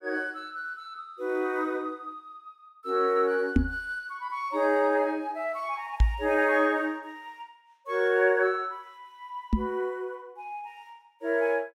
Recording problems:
microphone thump; at 3.5 s, at 6 s and at 9.5 s; peak +9 dB vs average level

